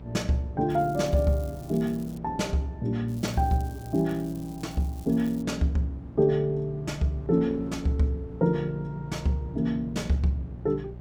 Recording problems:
hum; 60 Hz, harmonics up to 600 Hz, SNR 16 dB
wind on the microphone; below 460 Hz, SNR 23 dB
crackling; from 0.5 to 2 s and from 3 to 5.5 s; loose cable, SNR 24 dB

